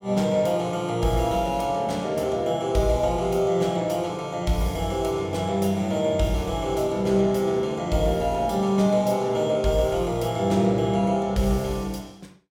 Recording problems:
none

